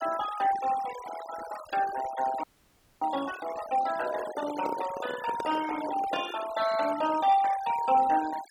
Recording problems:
denoising artefacts; signal-to-artefact ratio 13 dB
audio freezing; at 2.5 s for 0.5 s
handling noise; from 4 to 6.5 s; peak -2 dB vs average level

